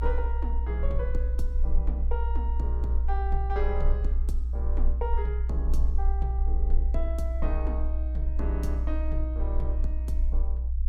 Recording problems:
rumble; below 60 Hz, SNR -8 dB

